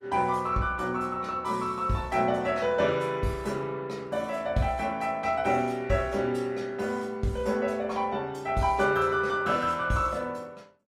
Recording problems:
lossy codec; Opus, log-spectral distance 2 dB, nothing above 15.5 kHz

